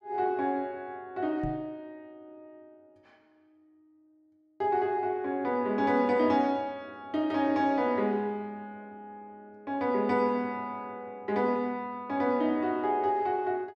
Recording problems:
knock on the microphone; at 1.5 s; peak -4 dB vs average level

